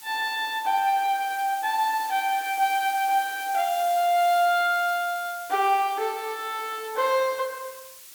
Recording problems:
hiss; slope +3 dB per octave, SNR 16 dB

